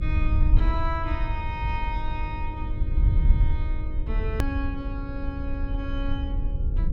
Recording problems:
electrical hum; 50 Hz, harmonics up to 550 Hz, SNR 11 dB
low-frequency rumble; below 66 Hz, SNR -7 dB
edit click; at 4.5 s

